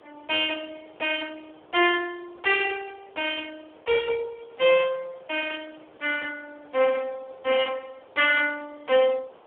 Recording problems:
phone line; 300 Hz to 3.2 kHz, Speex
background hiss; SNR 26 dB

